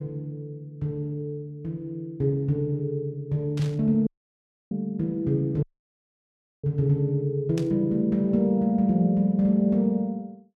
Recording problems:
static burst; at 3.5 s and at 7.5 s; peak -10 dB vs average level
audio cutting out; at 4 s for 0.5 s and at 5.5 s for 1 s

